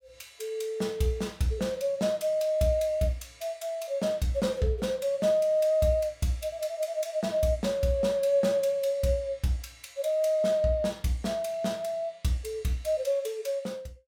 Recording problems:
none

